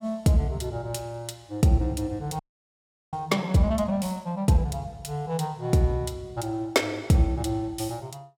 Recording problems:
audio freezing; at 2.5 s for 0.5 s

